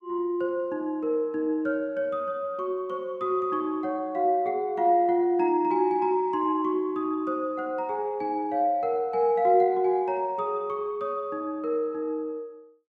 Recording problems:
none

